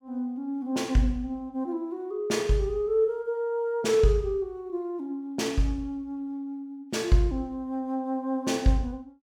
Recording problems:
none

